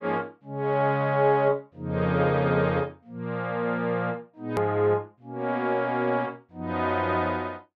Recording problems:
edit click; at 4.5 s

